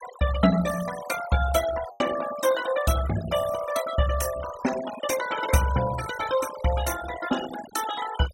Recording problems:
denoising artefacts; signal-to-artefact ratio 10 dB
packet loss; 1.1% of the sound replaced, filled with the last packet

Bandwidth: 16 kHz